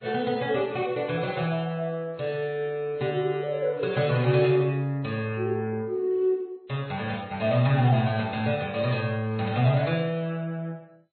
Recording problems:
lossy compression; MP2, then MP3, log-spectral distance 3 dB, nothing above 4.2 kHz

